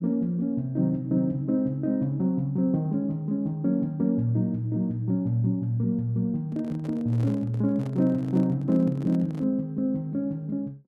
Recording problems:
microphone handling noise; from 6.5 to 9.5 s; peak -12 dB vs average level

